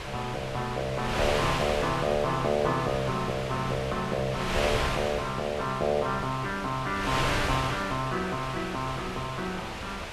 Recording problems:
wind noise; below 2.8 kHz, SNR 3 dB

